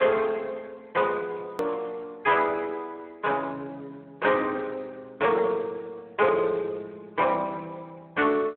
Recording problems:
telephone audio; 190 Hz to 3.5 kHz, Speex
distorted audio; soft clipping, signal-to-distortion ratio 11 dB
hard cut with a click; at 1.5 s

